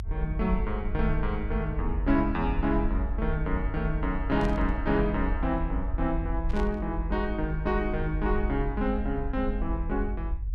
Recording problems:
low-frequency rumble; below 58 Hz, strongest tone 46 Hz, SNR 3 dB
static burst; at 4.5 s and at 6.5 s; peak -10 dB vs average level

